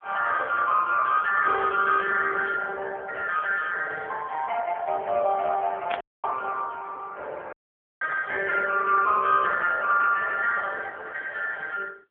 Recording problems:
phone line; 340 Hz to 2.8 kHz, AMR-NB
static burst; at 6 s; peak -5 dB vs average level
audio cutting out; at 6 s and at 7.5 s

